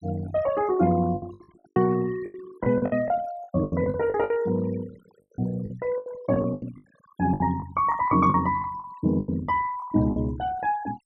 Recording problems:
noise reduction artefacts; signal-to-artefact ratio 18 dB
packet loss; 14% of the sound replaced, filled with the last packet

